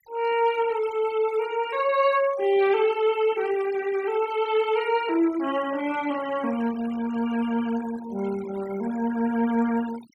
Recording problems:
noise reduction artefacts; signal-to-artefact ratio 17 dB

